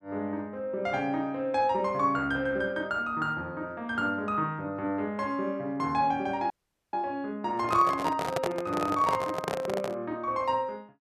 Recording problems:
dropout; at 6.5 s
microphone handling noise; from 7.5 to 10 s; peak +3 dB vs average level

